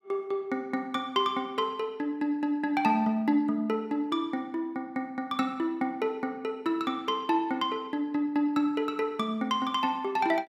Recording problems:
none

